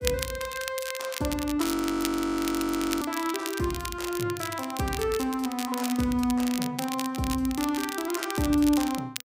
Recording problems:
crackling; vinyl, SNR 8 dB
audio freezing; at 1.5 s for 1.5 s

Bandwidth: 15.5 kHz